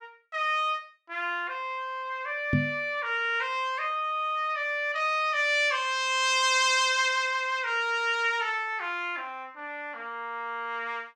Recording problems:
microphone bump; at 2.5 s; peak +5 dB vs average level

